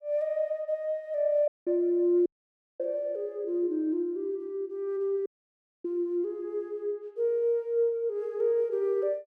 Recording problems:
audio cutting out; at 1.5 s, at 2.5 s for 0.5 s and at 5.5 s for 0.5 s

